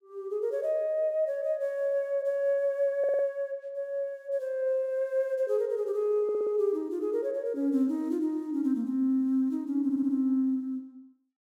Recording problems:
stutter; at 3 s, at 6 s and at 10 s

